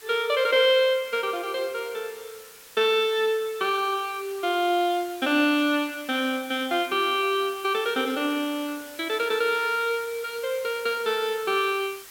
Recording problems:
hiss; slope +1 dB per octave, SNR 19 dB

